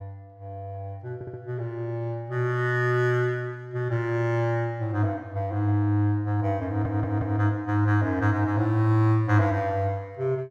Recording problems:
audio stuttering; at 1 s and at 6.5 s

